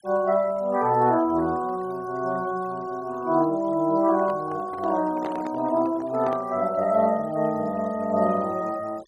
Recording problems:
noise reduction artefacts; signal-to-artefact ratio 23 dB
handling noise; from 4 to 6.5 s; peak -6 dB vs average level

